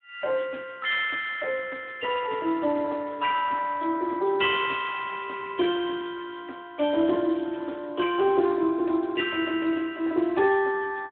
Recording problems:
telephone audio; 220 Hz to 3.7 kHz, Speex

